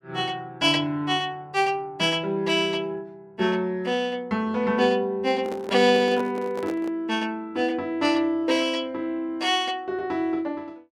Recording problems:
microphone handling noise; from 5.5 to 7 s; peak -6 dB vs average level

